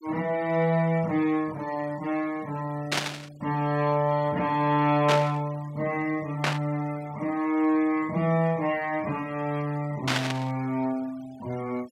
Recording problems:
noise reduction artefacts; signal-to-artefact ratio 22 dB
static burst; 4 times, first at 3 s; peak +5 dB vs average level

